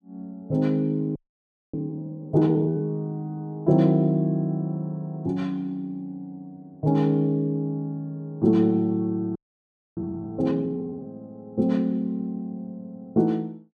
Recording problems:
audio freezing; at 1 s for 0.5 s and at 9.5 s for 0.5 s

